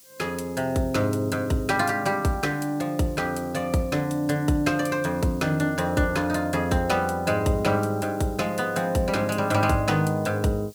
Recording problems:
hiss; SNR 24 dB

